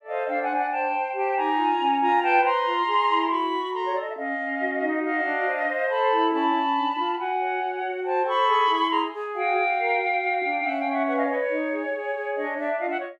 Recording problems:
none

